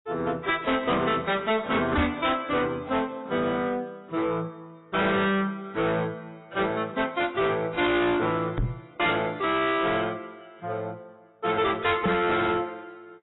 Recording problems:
lossy compression; AAC, log-spectral distance 3 dB, nothing above 3.8 kHz
distortion; soft clipping, signal-to-distortion ratio 6 dB
microphone thump; at 2 s, at 8.5 s and at 12 s; peak +8 dB vs average level

